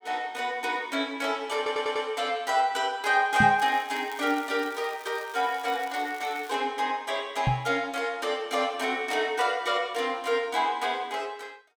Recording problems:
audio stuttering; at 1.5 s
microphone bump; at 3.5 s and at 7.5 s; peak +4 dB vs average level
crackle; from 3.5 to 6.5 s; loose cable, SNR 20 dB

